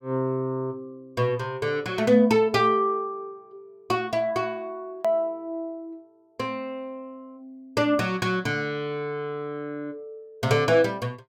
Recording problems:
hard cut with a click; at 5 s

